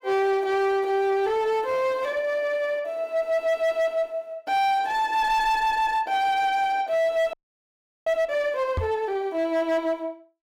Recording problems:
distortion; hard clipping, uneven, signal-to-distortion ratio 11 dB
frozen audio; at 7.5 s for 0.5 s
microphone bump; at 9 s; peak 0 dB vs average level

